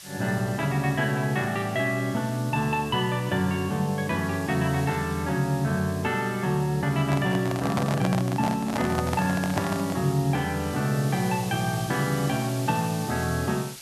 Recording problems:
background hiss; slope +3 dB per octave, SNR 15 dB
handling noise; from 7 to 10 s; peak +1 dB vs average level

